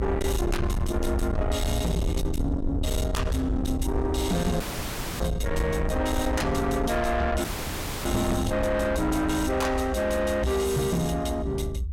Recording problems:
distortion; soft clipping, signal-to-distortion ratio 8 dB
low-frequency rumble; below 170 Hz, SNR 4 dB
dropout; at 4.5 s for 0.5 s and at 7.5 s for 0.5 s

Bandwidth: 16.5 kHz